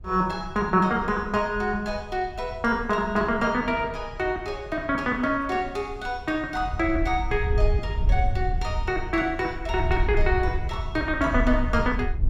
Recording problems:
wind on the microphone; below 74 Hz, SNR 5 dB

